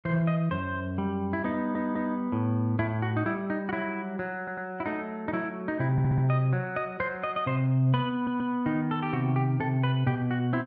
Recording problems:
audio stuttering; 4 times, first at 1.5 s

